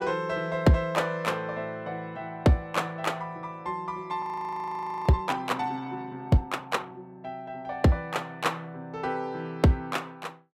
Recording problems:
frozen audio; at 4 s for 1 s

